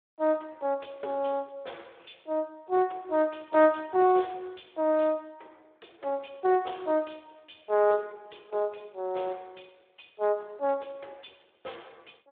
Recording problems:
telephone audio; 320 Hz to 3.6 kHz, Speex

